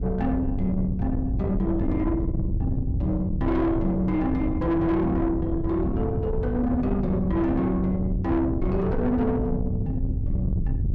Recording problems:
distorted audio; soft clipping, signal-to-distortion ratio 11 dB
low-frequency rumble; below 150 Hz, SNR 3 dB

